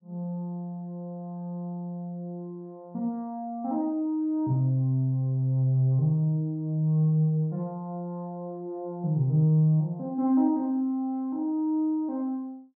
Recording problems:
none

